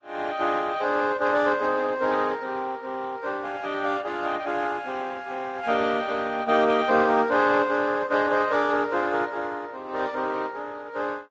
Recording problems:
lossy compression; Speex, then Vorbis, log-spectral distance 5 dB, nothing above 7.6 kHz

